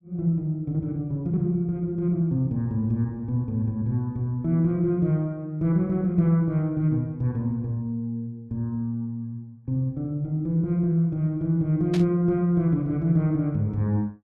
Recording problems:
burst of static; at 12 s; peak -7 dB vs average level

